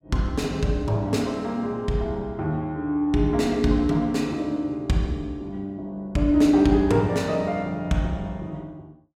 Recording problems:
none

